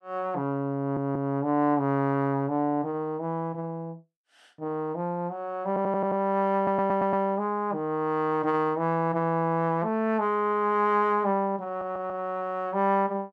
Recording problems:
audio stuttering; 4 times, first at 1 s

